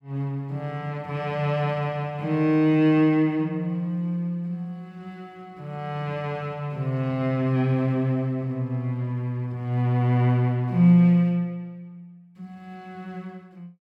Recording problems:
none

